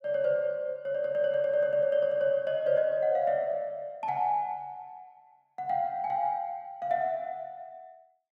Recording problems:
none

